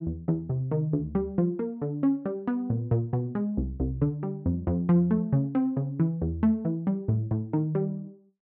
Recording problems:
none

